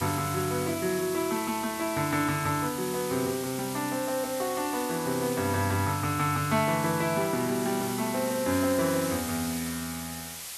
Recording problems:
hiss; slope +2 dB per octave, SNR 8 dB

